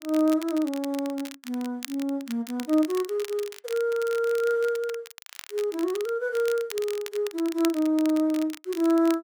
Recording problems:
crackling; vinyl, SNR 15 dB

